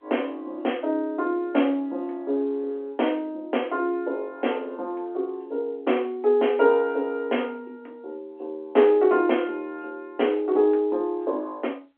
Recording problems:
phone line; 260 Hz to 3.4 kHz, G.711

